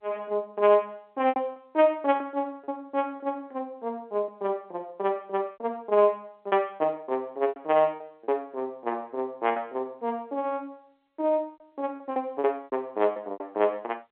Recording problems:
telephone audio; 320 Hz to 3.3 kHz, G.711
packet loss; 8% of the sound replaced, filled with repeated pitch periods

